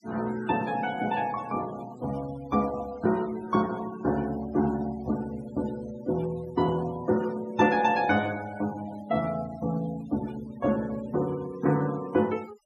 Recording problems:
denoising artefacts; signal-to-artefact ratio 19 dB

